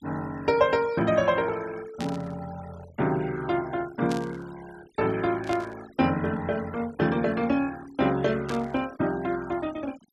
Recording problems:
noise reduction artefacts; signal-to-artefact ratio 21 dB
static burst; 4 times, first at 2 s; peak -7 dB vs average level

